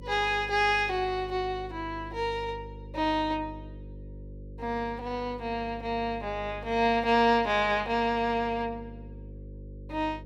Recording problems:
electrical hum; 50 Hz, harmonics up to 550 Hz, SNR 16 dB

